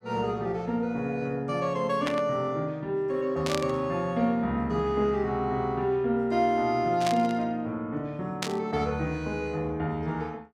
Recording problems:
static burst; 4 times, first at 2 s; peak +2 dB vs average level

